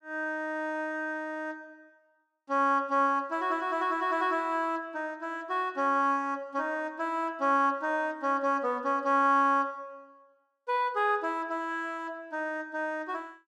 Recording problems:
none

